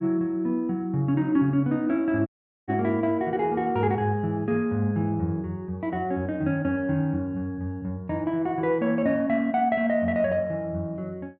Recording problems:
audio cutting out; at 2.5 s

